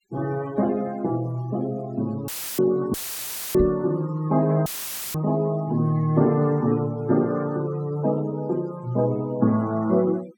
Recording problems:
denoising artefacts; signal-to-artefact ratio 24 dB
audio cutting out; at 2.5 s, at 3 s for 0.5 s and at 4.5 s; filled with static
microphone bump; at 3.5 s; peak 0 dB vs average level

